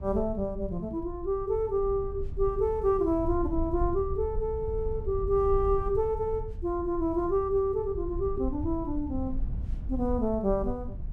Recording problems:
rumble; below 76 Hz, SNR 8 dB

